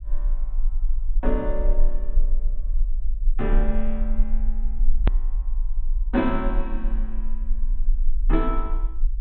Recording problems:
treble missing; nothing above 4 kHz
rumble; below 34 Hz, strongest tone 20 Hz, SNR -2 dB
click at an edit; at 5 s

